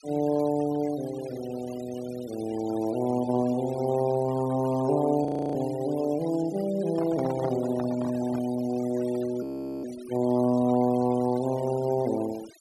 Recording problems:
denoising artefacts; signal-to-artefact ratio 18 dB
frozen audio; at 5.5 s and at 9.5 s
microphone handling noise; from 7 to 8.5 s; peak -5 dB vs average level

